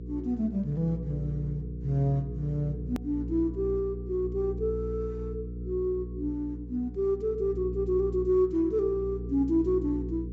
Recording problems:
treble missing; nothing above 8 kHz
electrical hum; 60 Hz, harmonics up to 480 Hz, SNR 8 dB
click at an edit; at 3 s

